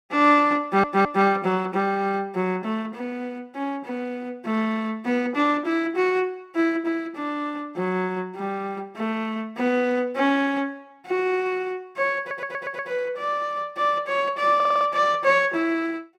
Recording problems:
audio stuttering; at 0.5 s, at 12 s and at 15 s

